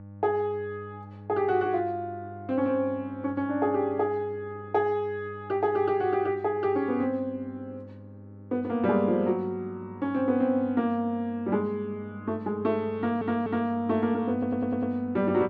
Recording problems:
electrical hum; 50 Hz, harmonics up to 800 Hz, SNR 17 dB
stutter; at 13 s and at 14 s

